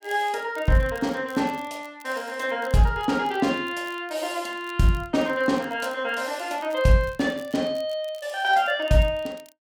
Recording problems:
crackle; vinyl, SNR 26 dB

